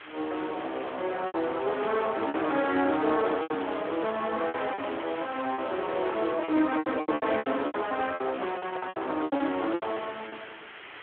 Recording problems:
phone line; 240 Hz to 3.6 kHz, Speex
hiss; SNR 13 dB
packet loss; 13% of the sound replaced, filled with repeated pitch periods

